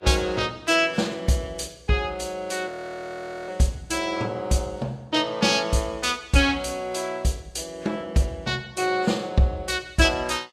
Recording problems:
lossy codec; Vorbis, log-spectral distance 3 dB, nothing above 12.7 kHz
audio freezing; at 2.5 s for 1 s

